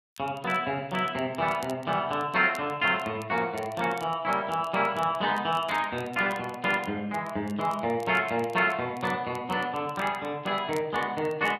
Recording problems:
crackle; vinyl, SNR 25 dB

